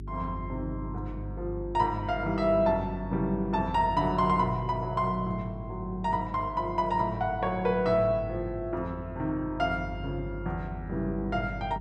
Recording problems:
hum; 50 Hz, harmonics up to 400 Hz, SNR 11 dB

